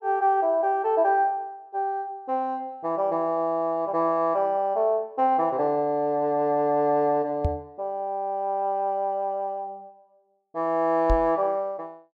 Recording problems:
knock on the microphone; at 7.5 s and at 11 s; peak +3 dB vs average level

